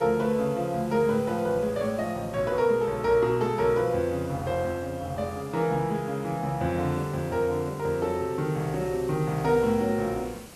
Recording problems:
background hiss; slope -4 dB per octave, SNR 20 dB

